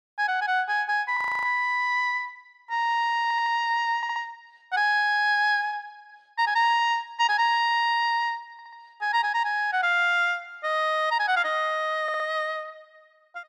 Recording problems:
audio freezing; at 1 s
stutter; 4 times, first at 3 s

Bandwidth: 14 kHz